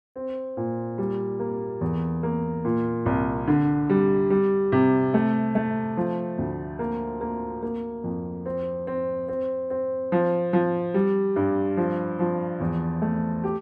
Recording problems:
none

